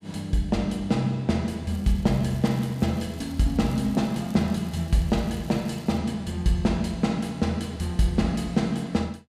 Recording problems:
crackle; from 1.5 to 6 s; loose cable, SNR 25 dB

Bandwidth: 14.5 kHz